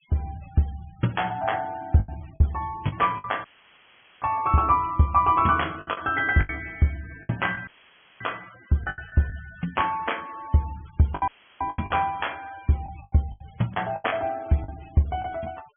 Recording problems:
treble cut off; nothing above 3.3 kHz
denoising artefacts; signal-to-artefact ratio 24 dB
packet loss; 9% of the sound replaced, filled with the last packet
dropout; at 3.5 s for 1 s, at 7.5 s for 0.5 s and at 11 s; filled with static

